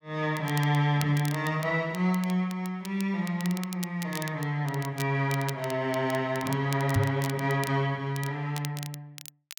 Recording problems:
crackling; vinyl, SNR 15 dB
microphone bump; at 7 s; peak +6 dB vs average level

